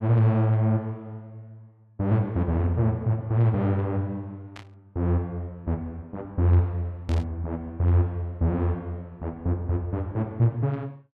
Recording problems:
burst of static; at 4.5 s and at 7 s; peak -13 dB vs average level

